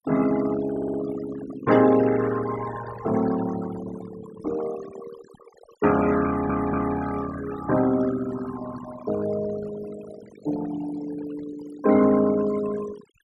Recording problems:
denoising artefacts; signal-to-artefact ratio 13 dB
stutter; at 0.5 s and at 6.5 s

